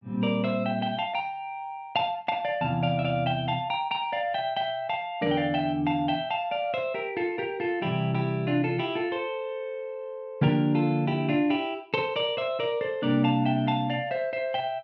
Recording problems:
none

